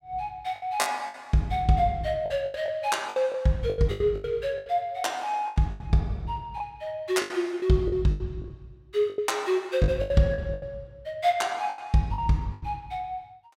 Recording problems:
packet loss; 13% of the sound replaced, filled with the last packet

